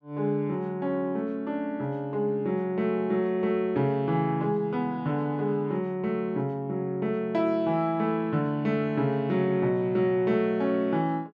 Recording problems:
none

